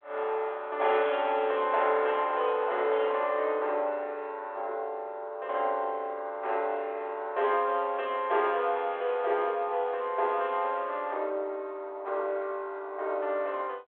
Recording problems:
phone line; 340 Hz to 3.4 kHz, G.726

